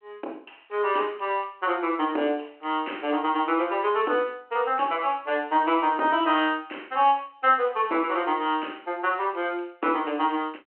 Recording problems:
phone line; 260 Hz to 3.1 kHz, G.726

